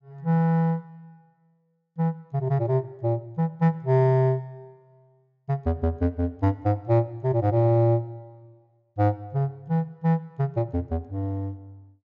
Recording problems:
treble missing; nothing above 8 kHz

